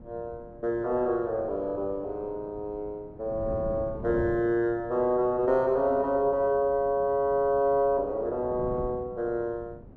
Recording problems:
wind noise; below 290 Hz, SNR 16 dB

